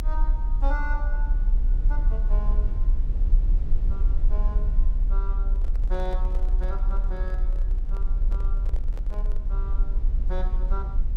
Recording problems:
rumble; below 42 Hz, strongest tone 32 Hz, SNR -13 dB
microphone handling noise; from 5.5 to 9.5 s; peak -1 dB vs average level

